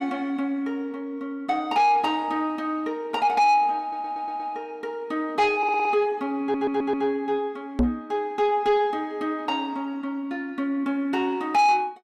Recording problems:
distortion; soft clipping, signal-to-distortion ratio 10 dB
audio stuttering; at 4 s, at 5.5 s and at 6.5 s
knock on the microphone; at 8 s; peak +6 dB vs average level

